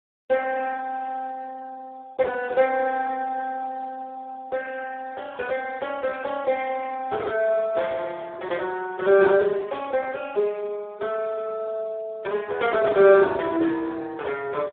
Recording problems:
phone line; 300 Hz to 3.7 kHz, Speex

